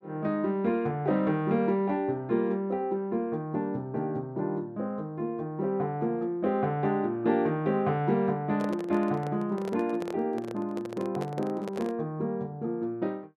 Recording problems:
handling noise; from 8.5 to 12 s; peak -4 dB vs average level

